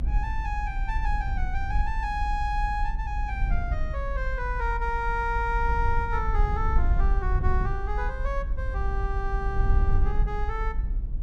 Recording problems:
low-frequency rumble; below 56 Hz, SNR -2 dB

